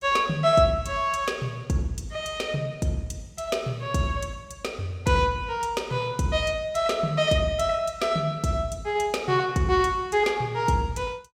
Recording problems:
none

